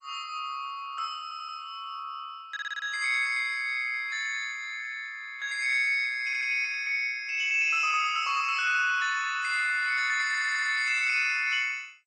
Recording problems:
lossy compression; AAC, then MP2, log-spectral distance 3 dB, nothing above 8.2 kHz
stutter; 4 times, first at 1 s

